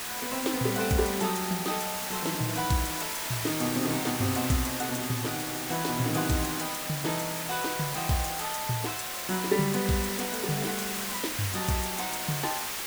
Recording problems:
hiss; slope 0 dB per octave, SNR 1 dB

